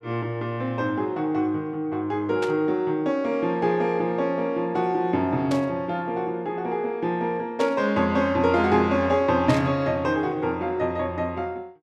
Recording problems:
burst of static; 4 times, first at 2.5 s; peak -5 dB vs average level

